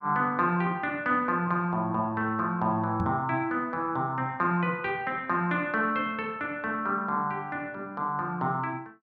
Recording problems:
microphone thump; at 3 s; peak +1 dB vs average level

